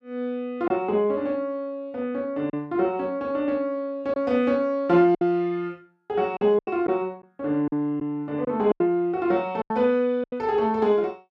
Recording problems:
packet loss; 5% of the sound replaced, filled with silence

